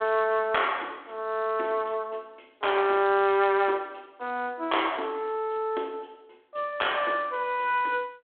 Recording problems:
phone line; 260 Hz to 3.5 kHz, G.726

